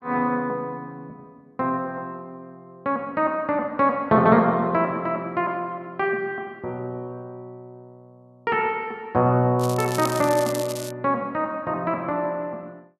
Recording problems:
crackle; from 9.5 to 11 s; loose cable, SNR 11 dB

